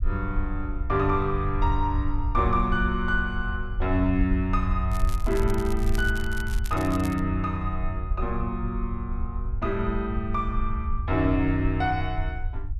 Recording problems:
low-frequency rumble; below 68 Hz, SNR 4 dB
crackling; from 5 to 7 s; loose cable, SNR 16 dB

